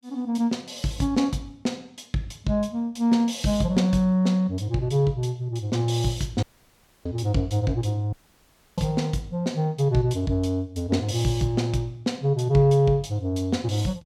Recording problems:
dropout; at 6.5 s for 0.5 s and at 8 s for 0.5 s

